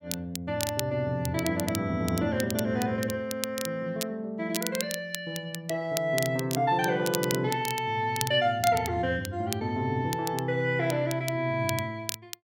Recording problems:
crackling; vinyl, SNR 9 dB

